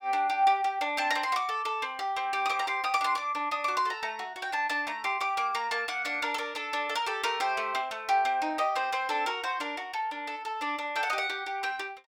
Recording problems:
none

